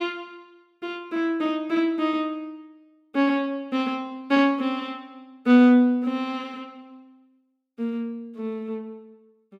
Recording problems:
none

